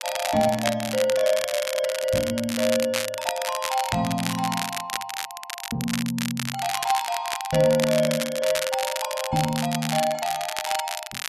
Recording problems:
crackling; vinyl, SNR 5 dB

